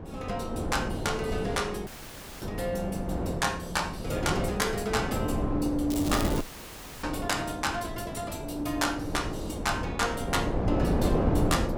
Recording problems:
wind on the microphone; below 460 Hz, SNR 1 dB
dropout; at 2 s for 0.5 s and at 6.5 s for 0.5 s
crackle; at 6 s; loose cable, SNR 8 dB

